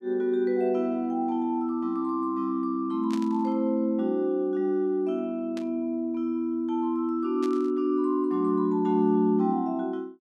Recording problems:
burst of static; at 3 s, at 5.5 s and at 7.5 s; peak -11 dB vs average level

